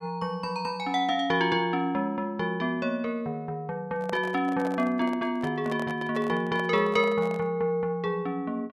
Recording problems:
microphone handling noise; from 4 to 7.5 s; peak -5 dB vs average level

